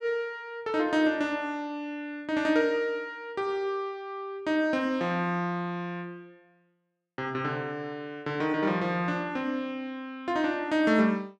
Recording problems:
none

